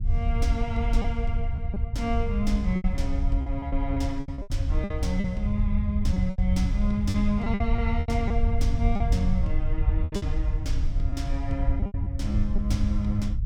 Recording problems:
rumble; below 80 Hz, SNR -3 dB
lost packets; 9% of the sound replaced, filled with repeated pitch periods

